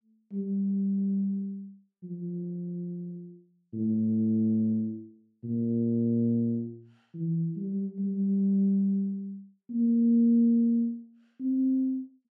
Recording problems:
none

